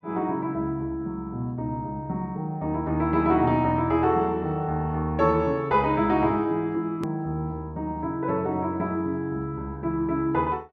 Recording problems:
hard cut with a click; at 7 s

